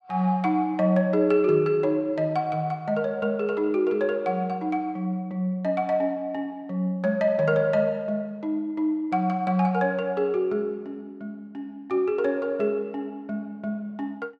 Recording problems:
none

